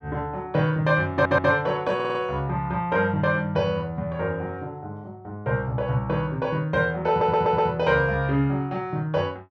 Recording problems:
stutter; at 1 s, at 2 s and at 7 s

